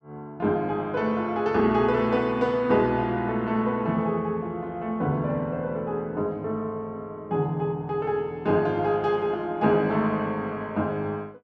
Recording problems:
none

